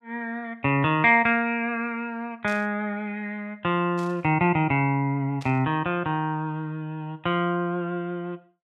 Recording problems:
static burst; at 2.5 s, at 4 s and at 5.5 s; peak -13 dB vs average level

